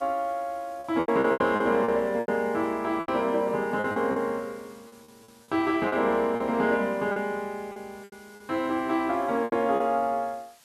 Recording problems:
background hiss; slope +1 dB per octave, SNR 28 dB
lost packets; 10% of the sound replaced, filled with repeated pitch periods

